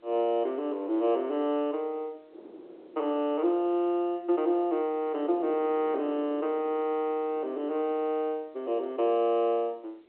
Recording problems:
telephone audio; 300 Hz to 3.1 kHz, G.711
wind noise; below 480 Hz, SNR 19 dB

